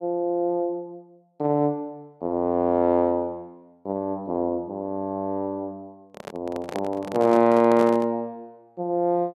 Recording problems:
handling noise; from 6 to 8 s; peak -4 dB vs average level

